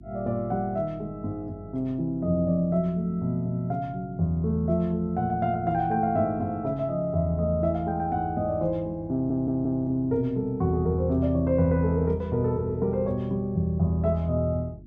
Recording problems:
electrical hum; 50 Hz, harmonics up to 350 Hz, SNR 21 dB
stutter; at 9 s

